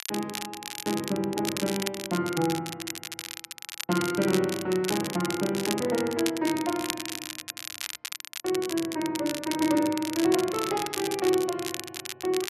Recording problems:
crackle; vinyl, SNR 7 dB

